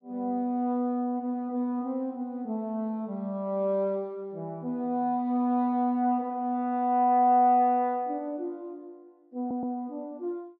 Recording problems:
stutter; at 9.5 s

